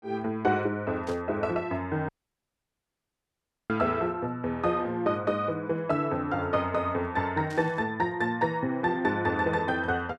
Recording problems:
burst of static; at 1 s and at 7.5 s; peak -13 dB vs average level
dropout; at 2 s for 1.5 s

